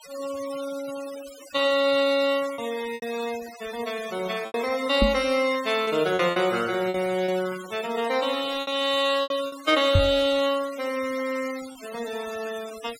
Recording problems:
noise reduction artefacts; signal-to-artefact ratio 15 dB
packet loss; 6% of the sound replaced, filled with repeated pitch periods
microphone bump; at 5 s and at 10 s; peak +7 dB vs average level

